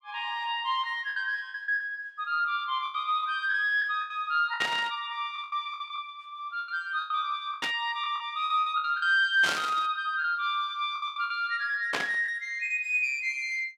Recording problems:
lost packets; 10% of the sound replaced, filled with the last packet
static burst; 4 times, first at 4.5 s; peak +3 dB vs average level

